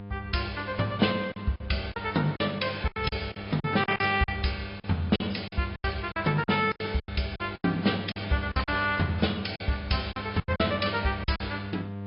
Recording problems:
low-pass filter; nothing above 5.2 kHz
lossy compression; AAC, then AAC, log-spectral distance 4 dB
hum; 50 Hz, harmonics up to 1.4 kHz, SNR 11 dB
packet loss; 12% of the sound replaced, filled with silence

